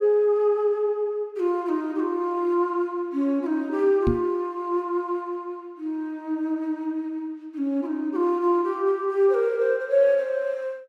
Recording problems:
microphone thump; at 4 s; peak +4 dB vs average level

